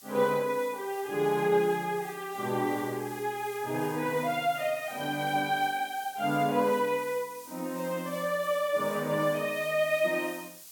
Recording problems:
hiss; SNR 17 dB

